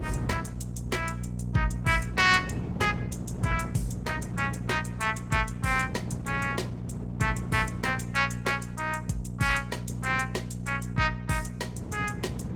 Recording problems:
codec artefacts; Opus, log-spectral distance 4 dB, nothing above 19 kHz
hum; 60 Hz, harmonics up to 480 Hz, SNR 5 dB
wind on the microphone; below 260 Hz, SNR 10 dB

